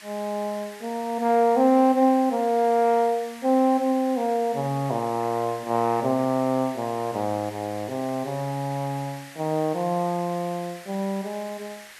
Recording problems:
hiss; SNR 19 dB

